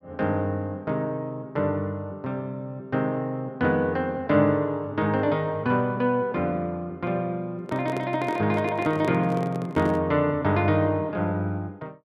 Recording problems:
handling noise; from 7.5 to 10 s; peak -3 dB vs average level

